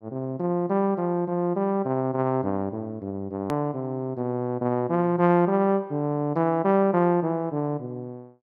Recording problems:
edit click; at 3.5 s

